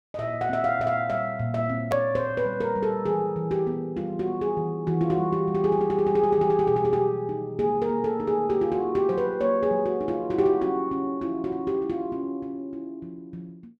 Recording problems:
edit click; at 2 s

